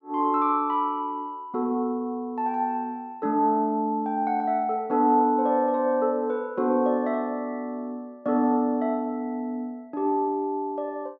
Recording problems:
none

